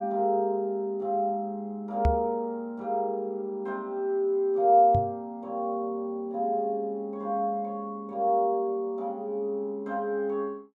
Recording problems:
microphone thump; at 2 s and at 5 s; peak +5 dB vs average level

